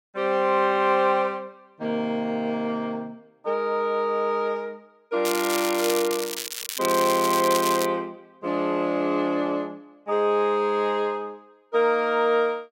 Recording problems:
crackling; from 5.5 to 8 s; loose cable, SNR 6 dB

